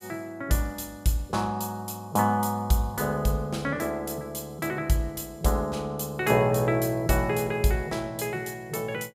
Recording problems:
none

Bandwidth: 15.5 kHz